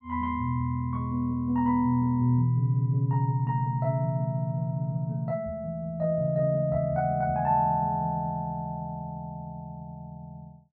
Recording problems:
none

